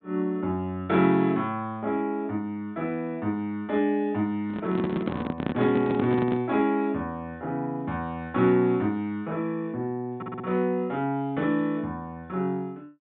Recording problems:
low-pass filter; nothing above 4 kHz
microphone handling noise; from 4.5 to 6.5 s; peak +2 dB vs average level
audio stuttering; at 10 s

